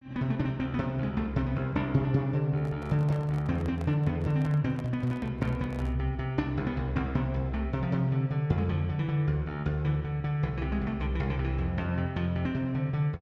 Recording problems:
microphone handling noise; from 2.5 to 6 s; peak -11 dB vs average level

